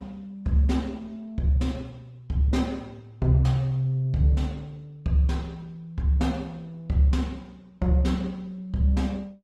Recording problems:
lossy codec; Opus, log-spectral distance 2 dB, nothing above 16.1 kHz

